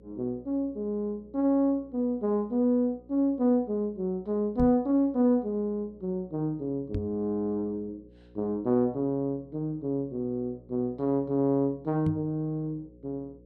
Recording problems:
hum; 60 Hz, harmonics up to 540 Hz, SNR 26 dB
microphone thump; at 4.5 s, at 7 s and at 12 s; peak +1 dB vs average level

